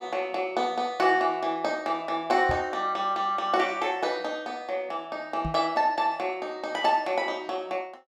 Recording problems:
microphone bump; at 2.5 s and at 5.5 s; peak -2 dB vs average level

